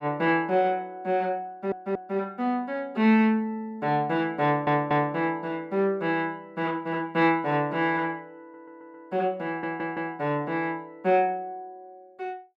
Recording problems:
audio stuttering; 4 times, first at 1.5 s

